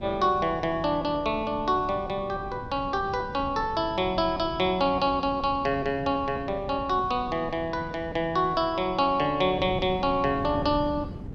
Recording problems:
wind noise; below 230 Hz, SNR 14 dB

